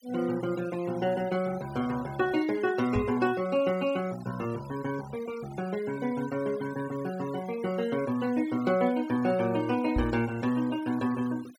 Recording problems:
denoising artefacts; signal-to-artefact ratio 18 dB
microphone thump; at 3 s and at 10 s; peak +2 dB vs average level

